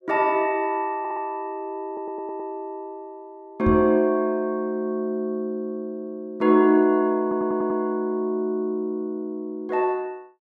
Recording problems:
audio stuttering; at 1 s, at 2 s and at 7 s
microphone bump; at 3.5 s; peak +1 dB vs average level

